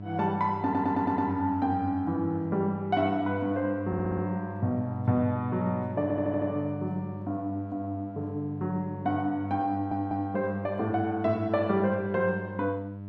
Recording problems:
hum; 50 Hz, harmonics up to 700 Hz, SNR 10 dB
stutter; 4 times, first at 0.5 s

